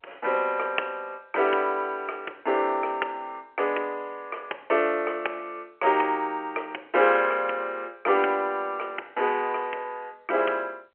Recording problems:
telephone audio; 320 Hz to 3.1 kHz, G.711

